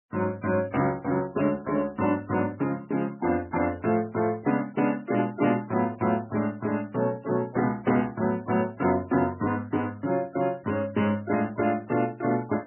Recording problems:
lossy compression; MP3, log-spectral distance 3 dB, nothing above 2.5 kHz

